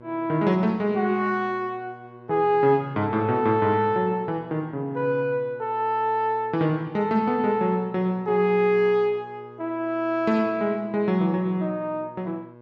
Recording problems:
electrical hum; 60 Hz, harmonics up to 1.7 kHz, SNR 23 dB

